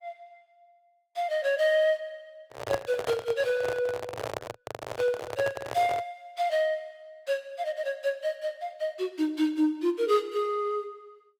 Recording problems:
lossy compression; Opus, log-spectral distance 2 dB, nothing above 19.5 kHz
microphone handling noise; from 2.5 to 6 s; peak +2 dB vs average level

